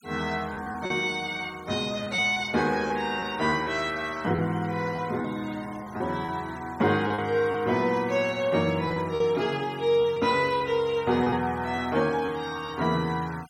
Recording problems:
denoising artefacts; signal-to-artefact ratio 22 dB
packet loss; 5% of the sound replaced, filled with repeated pitch periods

